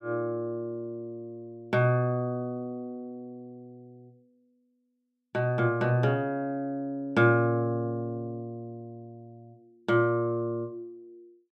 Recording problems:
none

